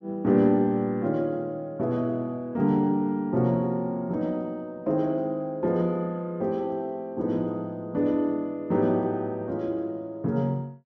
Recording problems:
none

